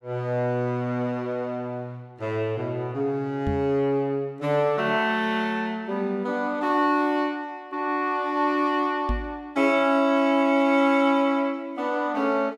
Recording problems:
knock on the microphone; at 3.5 s and at 9 s; peak 0 dB vs average level

